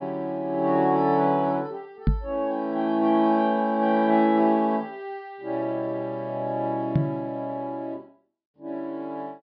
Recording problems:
treble cut off; nothing above 5.5 kHz
microphone bump; at 2 s and at 7 s; peak +6 dB vs average level

